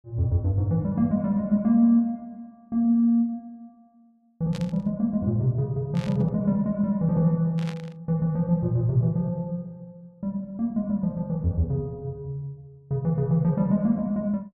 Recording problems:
static burst; at 4.5 s, at 6 s and at 7.5 s; peak -11 dB vs average level

